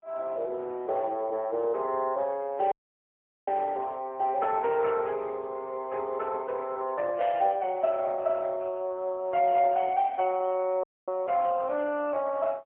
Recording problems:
phone line; 300 Hz to 3.2 kHz, AMR-NB, then MP3
audio cutting out; at 2.5 s for 1 s and at 11 s
burst of static; at 7 s; peak -9 dB vs average level

